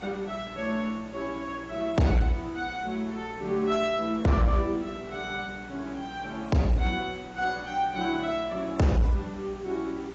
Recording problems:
codec artefacts; AAC, log-spectral distance 4 dB
distortion; hard clipping, uneven, signal-to-distortion ratio 12 dB
hum; 60 Hz, harmonics up to 480 Hz, SNR 23 dB
hiss; SNR 20 dB

